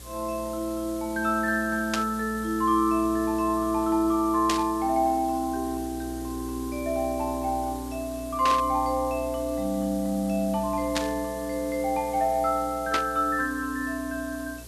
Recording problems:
electrical hum; 60 Hz, harmonics up to 540 Hz, SNR 17 dB
hiss; slope 0 dB per octave, SNR 17 dB
static burst; 5 times, first at 2 s; peak +3 dB vs average level

